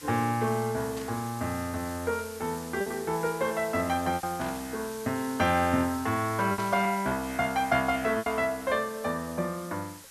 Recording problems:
background hiss; slope +1 dB per octave, SNR 15 dB
packet loss; 3% of the sound replaced, filled with repeated pitch periods
burst of static; at 1 s, at 4.5 s and at 6.5 s; peak -10 dB vs average level

